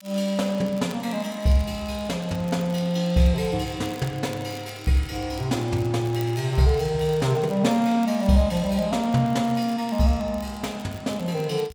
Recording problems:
crackle; vinyl, SNR 24 dB

